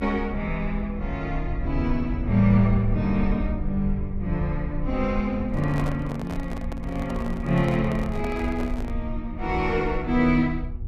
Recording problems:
electrical hum; 60 Hz, harmonics up to 840 Hz, SNR 22 dB
low-frequency rumble; below 66 Hz, SNR 8 dB
microphone handling noise; from 5.5 to 9 s; peak -5 dB vs average level

